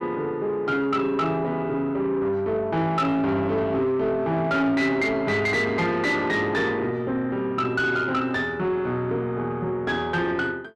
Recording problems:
distortion; soft clipping, signal-to-distortion ratio 11 dB

